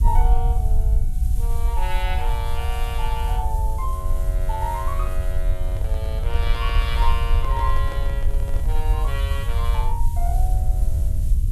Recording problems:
background hiss; slope +3 dB per octave, SNR 15 dB
rumble; below 60 Hz, SNR -7 dB
microphone handling noise; from 5.5 to 9 s; peak -3 dB vs average level

